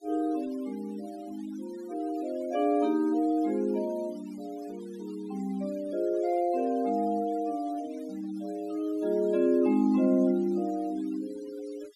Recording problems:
noise reduction artefacts; signal-to-artefact ratio 24 dB

